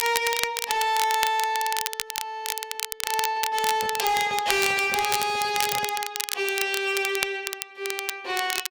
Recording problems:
distorted audio; hard clipping, signal-to-distortion ratio 11 dB
crackle; vinyl, SNR 4 dB
microphone handling noise; from 3.5 to 6 s; peak -8 dB vs average level

